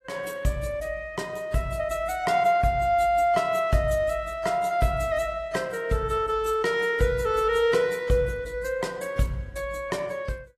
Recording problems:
codec artefacts; AAC, log-spectral distance 2 dB, nothing above 12.7 kHz

